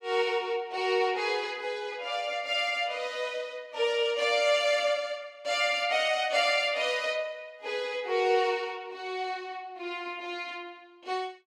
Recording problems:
none

